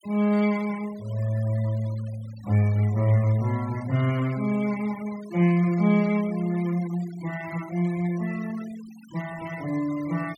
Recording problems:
denoising artefacts; signal-to-artefact ratio 21 dB

